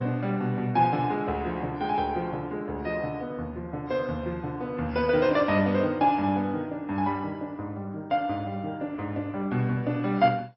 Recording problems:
lossy compression; MP2, then AAC, log-spectral distance 2 dB, nothing above 4.6 kHz

